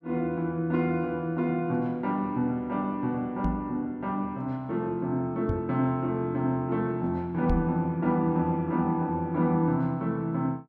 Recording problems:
microphone bump; at 3.5 s, at 5.5 s and at 7.5 s; peak +2 dB vs average level

